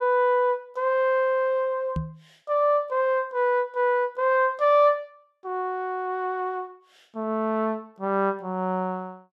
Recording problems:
knock on the microphone; at 2 s; peak -1 dB vs average level

